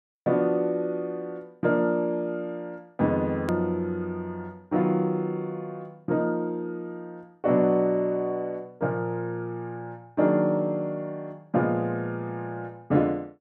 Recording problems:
click at an edit; at 3.5 s

